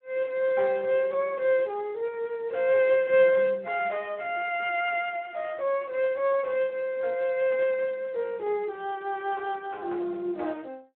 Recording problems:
telephone audio; 320 Hz to 3.5 kHz, Speex

